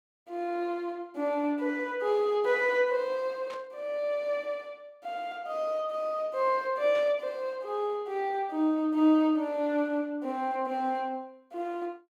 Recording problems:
burst of static; at 3.5 s and at 7 s; peak -13 dB vs average level

